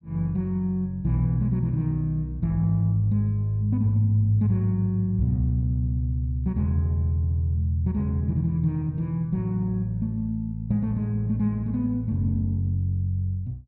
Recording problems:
treble cut off; nothing above 7.6 kHz

